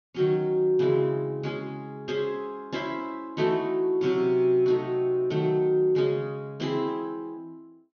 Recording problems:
treble cut off; nothing above 6.6 kHz

